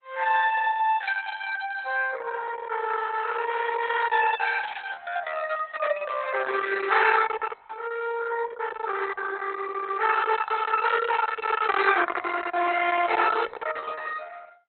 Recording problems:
lossy codec; Opus, log-spectral distance 5 dB, nothing above 4 kHz

